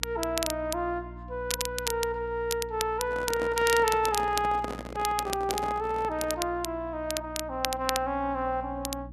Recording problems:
electrical hum; 60 Hz, harmonics up to 300 Hz, SNR 15 dB
crackling; vinyl, SNR 6 dB
handling noise; from 3 to 6.5 s; peak -3 dB vs average level

